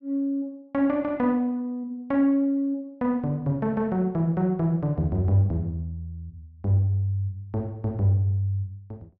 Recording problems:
none

